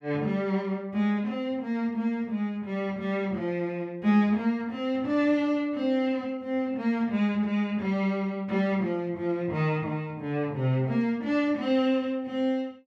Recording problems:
none

